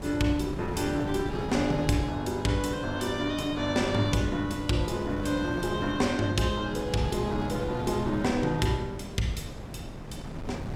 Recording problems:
wind on the microphone; below 420 Hz, SNR 9 dB

